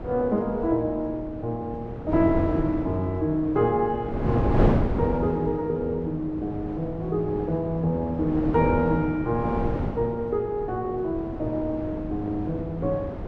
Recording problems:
wind on the microphone; below 400 Hz, SNR 5 dB

